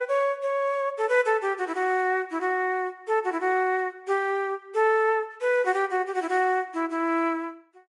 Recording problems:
codec artefacts; Vorbis, log-spectral distance 2 dB, nothing above 10.7 kHz

